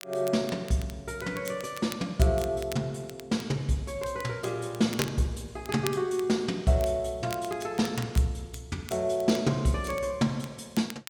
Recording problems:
crackle; vinyl, SNR 15 dB

